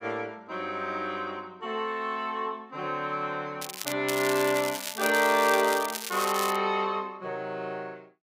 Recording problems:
crackling; at 3.5 s and from 4 to 6.5 s; loose cable, SNR 6 dB

